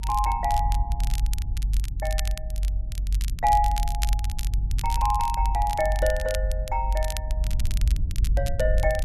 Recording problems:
rumble; below 54 Hz, strongest tone 48 Hz, SNR 1 dB
crackling; vinyl, SNR 12 dB

